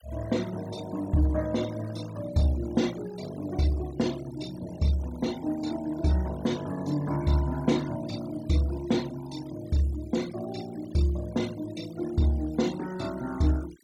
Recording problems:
noise reduction artefacts; signal-to-artefact ratio 19 dB

